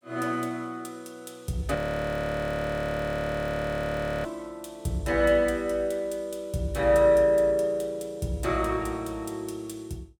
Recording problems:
frozen audio; at 2 s for 2.5 s

